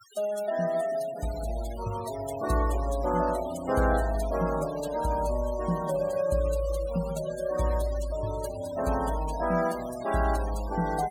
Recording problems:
noise reduction artefacts; signal-to-artefact ratio 15 dB

